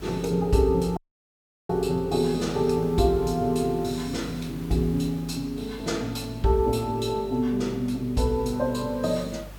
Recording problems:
mains hum; 50 Hz, harmonics up to 450 Hz, SNR 18 dB
hiss; slope -3 dB per octave, SNR 23 dB
dropout; at 1 s for 0.5 s

